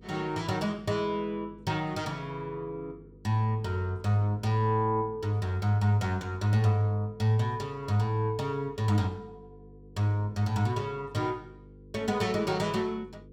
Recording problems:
electrical hum; 50 Hz, harmonics up to 500 Hz, SNR 23 dB

